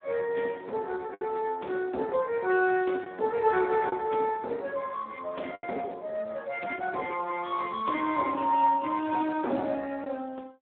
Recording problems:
phone line; 240 Hz to 2.8 kHz, Speex
lost packets; 2% of the sound replaced, filled with the last packet

